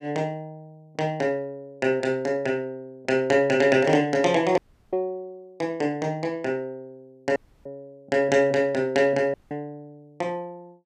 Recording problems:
dropout; at 4.5 s, at 7.5 s and at 9.5 s

